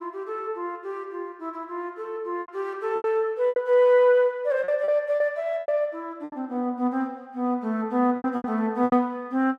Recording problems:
lost packets; 8% of the sound replaced, filled with repeated pitch periods

